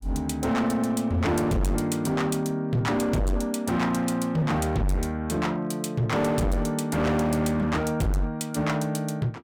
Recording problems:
distorted audio; hard clipping, signal-to-distortion ratio 7 dB

